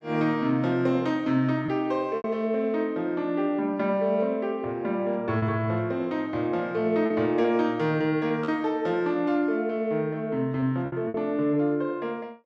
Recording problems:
packet loss; 3% of the sound replaced, filled with repeated pitch periods

